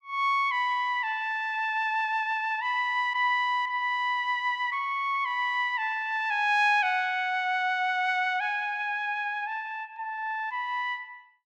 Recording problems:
none

